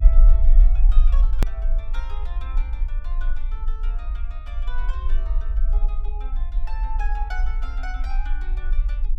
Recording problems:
electrical hum; 60 Hz, harmonics up to 480 Hz, SNR 16 dB
low-frequency rumble; below 40 Hz, strongest tone 22 Hz, SNR -16 dB
hard cut with a click; at 1.5 s

